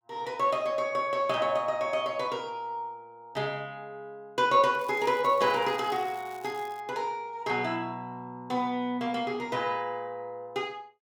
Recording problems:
crackling; from 4.5 to 7 s; loose cable, SNR 24 dB

